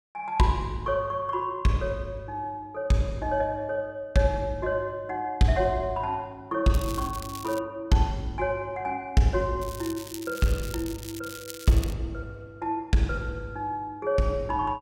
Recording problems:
crackle; at 6.5 s and from 9.5 to 12 s; loose cable, SNR 14 dB

